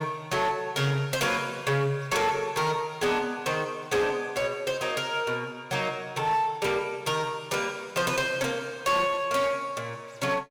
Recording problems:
distorted audio; hard clipping, uneven, signal-to-distortion ratio 10 dB

